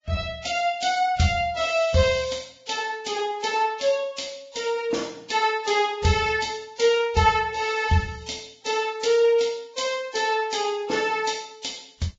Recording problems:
lossy compression; Vorbis, log-spectral distance 6 dB, nothing above 7.3 kHz

